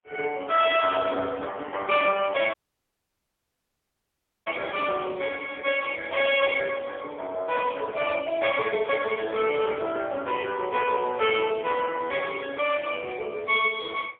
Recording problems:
telephone audio; 340 Hz to 3.3 kHz, AMR-NB, then MP3
dropout; at 2.5 s for 2 s

